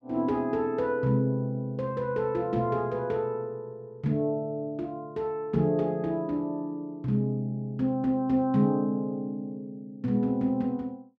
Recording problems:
none

